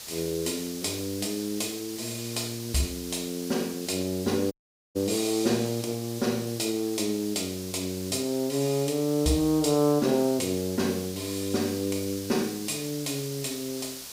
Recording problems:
hiss; SNR 10 dB
dropout; at 4.5 s

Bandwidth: 15.5 kHz